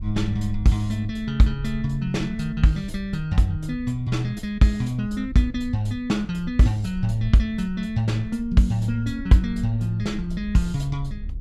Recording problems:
wind noise; below 64 Hz, SNR 15 dB

